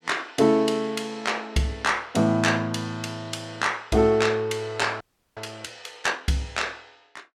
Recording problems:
frozen audio; at 5 s

